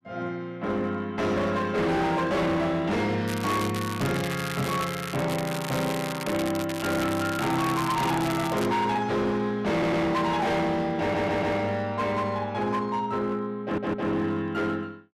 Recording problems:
distorted audio; hard clipping, signal-to-distortion ratio 7 dB
crackle; from 3.5 to 8.5 s; loose cable, SNR 9 dB
stutter; at 9.5 s, at 11 s and at 14 s

